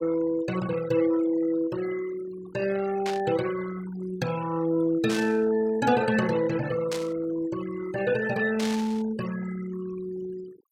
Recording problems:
noise reduction artefacts; signal-to-artefact ratio 15 dB
static burst; 4 times, first at 3 s; peak -4 dB vs average level

